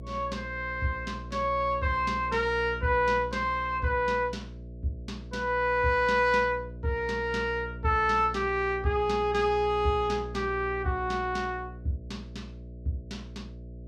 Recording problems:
hum; 60 Hz, harmonics up to 660 Hz, SNR 13 dB

